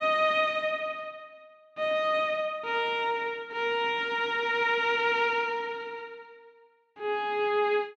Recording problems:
none

